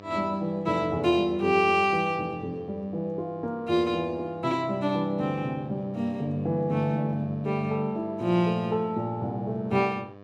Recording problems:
hum; 50 Hz, harmonics up to 2.4 kHz, SNR 20 dB

